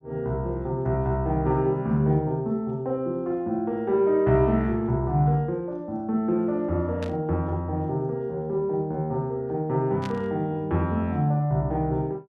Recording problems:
static burst; at 7 s and at 10 s; peak -10 dB vs average level

